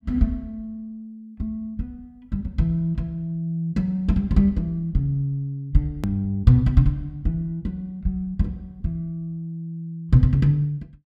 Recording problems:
edit click; at 6 s

